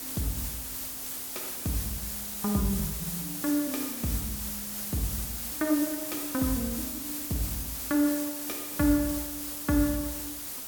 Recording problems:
background hiss; slope -1 dB per octave, SNR 2 dB

